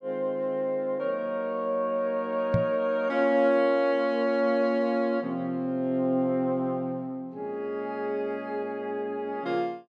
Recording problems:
knock on the microphone; at 2.5 s; peak +5 dB vs average level

